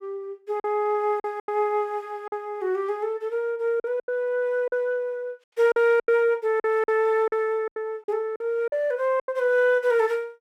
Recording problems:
lost packets; 9% of the sound replaced, filled with silence

